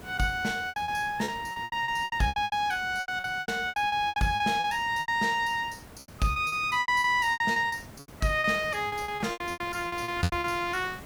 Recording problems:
hiss; slope -6 dB per octave, SNR 19 dB
lost packets; 20% of the sound replaced, filled with repeated pitch periods

